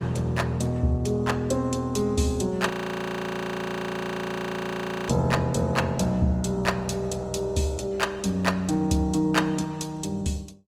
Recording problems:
lossy codec; Opus, log-spectral distance 2 dB, nothing above 19.5 kHz
frozen audio; at 2.5 s for 2.5 s

